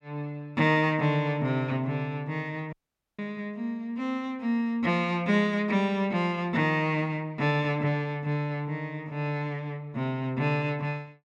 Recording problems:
dropout; at 2.5 s

